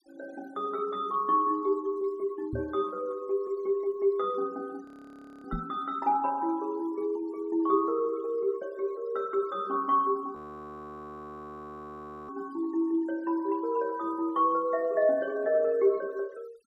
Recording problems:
noise reduction artefacts; signal-to-artefact ratio 27 dB
microphone bump; at 2.5 s and at 5.5 s; peak -1 dB vs average level
audio freezing; at 5 s for 0.5 s and at 10 s for 2 s

